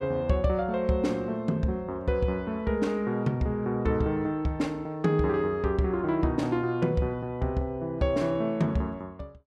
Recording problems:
none

